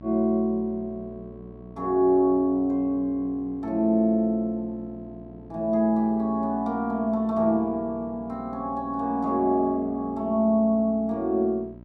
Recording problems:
hum; 60 Hz, harmonics up to 1 kHz, SNR 21 dB

